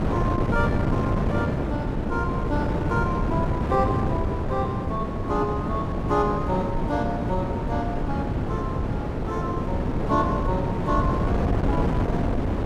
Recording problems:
wind on the microphone; below 380 Hz, SNR -3 dB

